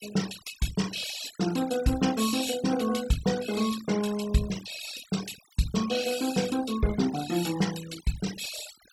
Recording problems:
denoising artefacts; signal-to-artefact ratio 12 dB

